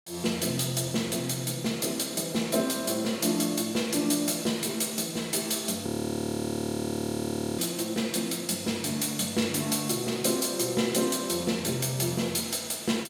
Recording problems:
audio freezing; at 6 s for 1.5 s

